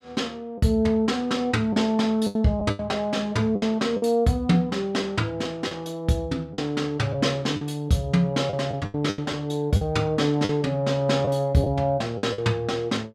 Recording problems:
lost packets; 7% of the sound replaced, filled with the last packet

